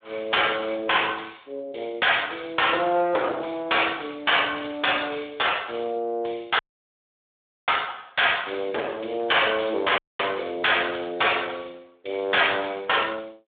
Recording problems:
telephone audio; 300 Hz to 3.6 kHz, Speex
distortion; hard clipping, uneven, signal-to-distortion ratio 10 dB
dropout; at 6.5 s for 1 s and at 10 s

